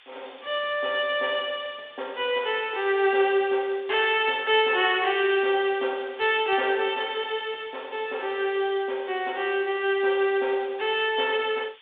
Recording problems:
phone line; 320 Hz to 3.6 kHz, G.726
background hiss; SNR 26 dB

